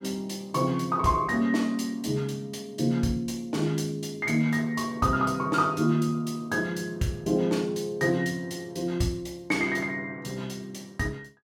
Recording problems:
none

